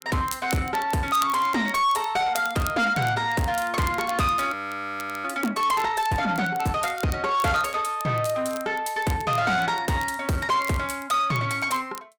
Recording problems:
distorted audio; soft clipping, signal-to-distortion ratio 10 dB
crackle; vinyl, SNR 17 dB
audio freezing; at 4.5 s for 0.5 s

